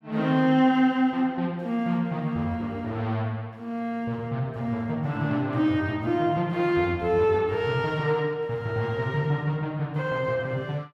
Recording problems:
none

